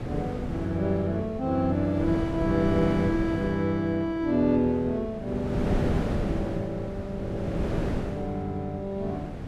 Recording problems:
wind on the microphone; below 380 Hz, SNR 5 dB

